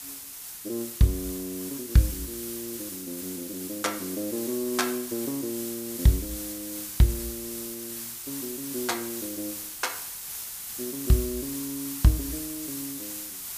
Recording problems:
background hiss; slope +2 dB per octave, SNR 5 dB

